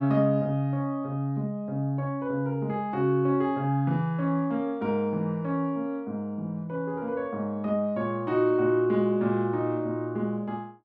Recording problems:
none

